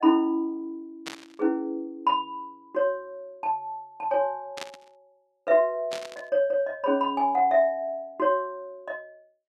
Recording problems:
burst of static; at 1 s, at 4.5 s and at 6 s; peak -4 dB vs average level

